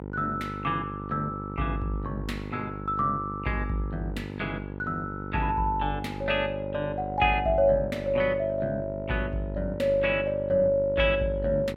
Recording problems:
mains hum; 50 Hz, harmonics up to 1.1 kHz, SNR 9 dB

